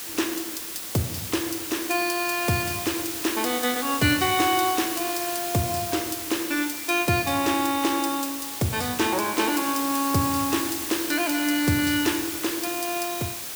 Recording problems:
hiss; slope 0 dB per octave, SNR 5 dB

